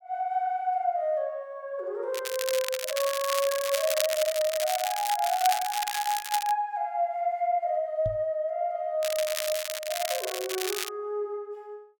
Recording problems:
crackle; from 2 to 6.5 s and from 9 to 11 s; loose cable, SNR 4 dB
microphone bump; at 8 s; peak -2 dB vs average level

